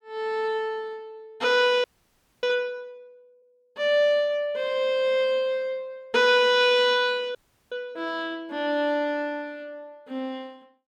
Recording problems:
audio freezing; at 2 s for 0.5 s and at 7.5 s

